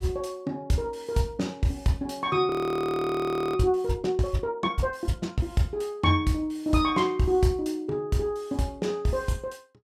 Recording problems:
audio freezing; at 2.5 s for 1 s

